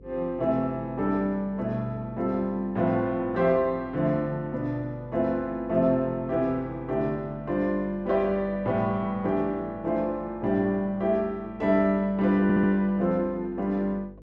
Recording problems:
hum; 50 Hz, harmonics up to 500 Hz, SNR 22 dB
stutter; at 12 s

